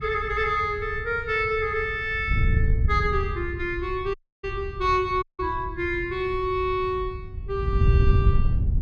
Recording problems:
wind on the microphone; below 100 Hz, SNR 2 dB
dropout; at 4 s and at 5 s

